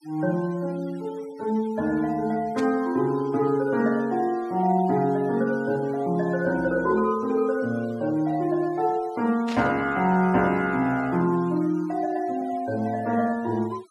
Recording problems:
noise reduction artefacts; signal-to-artefact ratio 23 dB
static burst; at 2.5 s and at 9.5 s; peak -8 dB vs average level

